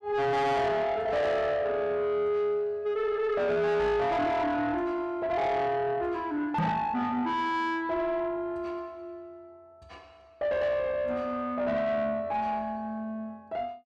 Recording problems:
distorted audio; soft clipping, signal-to-distortion ratio 7 dB
knock on the microphone; at 6.5 s; peak +5 dB vs average level

